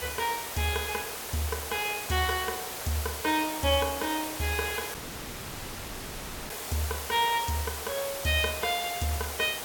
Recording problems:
background hiss; SNR 5 dB
audio cutting out; at 5 s for 1.5 s

